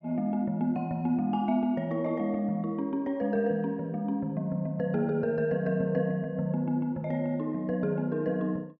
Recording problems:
none

